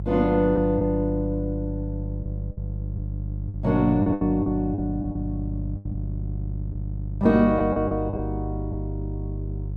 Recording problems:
electrical hum; 50 Hz, harmonics up to 350 Hz, SNR 7 dB
packet loss; 6% of the sound replaced, filled with the last packet

